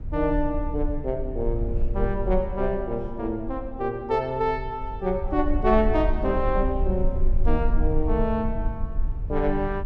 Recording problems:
rumble; below 50 Hz, strongest tone 18 Hz, SNR 4 dB

